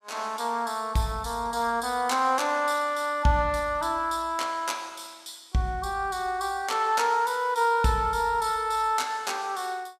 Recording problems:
none

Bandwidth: 15 kHz